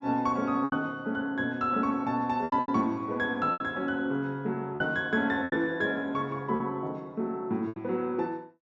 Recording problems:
treble missing; nothing above 8 kHz
packet loss; 7% of the sound replaced, filled with repeated pitch periods

